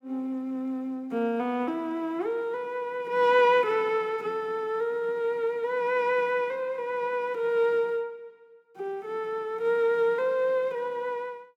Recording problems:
none

